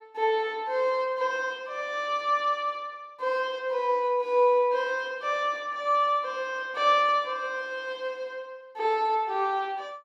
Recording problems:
none

